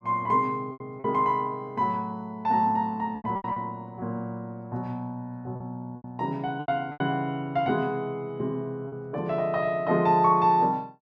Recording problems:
lost packets; 6% of the sound replaced, filled with repeated pitch periods

